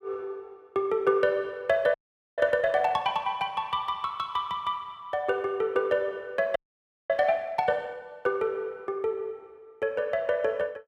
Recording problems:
audio freezing; at 2 s and at 6.5 s for 0.5 s

